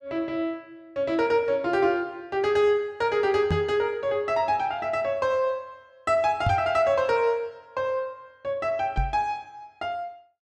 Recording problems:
knock on the microphone; at 3.5 s, at 6.5 s and at 9 s; peak +3 dB vs average level

